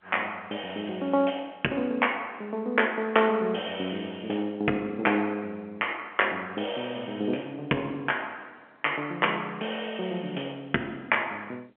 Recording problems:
telephone audio; 190 Hz to 3.2 kHz, G.711

